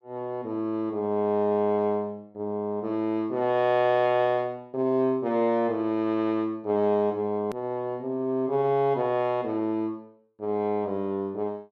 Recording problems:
hard cut with a click; at 7.5 s

